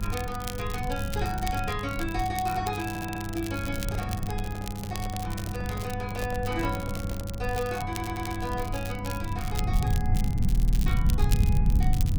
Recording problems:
hum; 50 Hz, harmonics up to 1.2 kHz, SNR 4 dB
rumble; below 110 Hz, SNR -2 dB
crackling; vinyl, SNR 8 dB
stutter; at 3 s, at 8 s and at 10 s
handling noise; from 3.5 to 7.5 s; peak -3 dB vs average level

